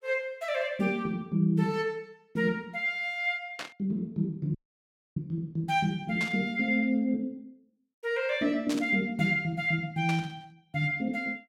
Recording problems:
static burst; 4 times, first at 3.5 s; peak -3 dB vs average level
audio cutting out; at 4.5 s for 0.5 s

